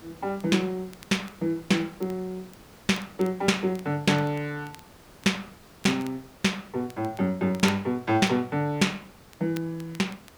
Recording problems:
background hiss; slope -4 dB per octave, SNR 23 dB
crackling; vinyl, SNR 24 dB

